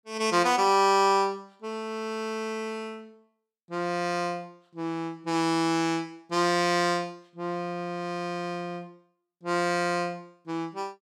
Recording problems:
none

